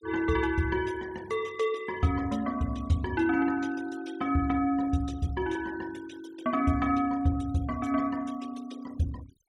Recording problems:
noise reduction artefacts; signal-to-artefact ratio 23 dB

